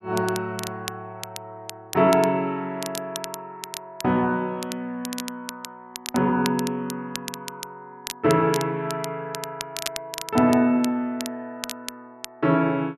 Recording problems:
crackling; vinyl, SNR 12 dB

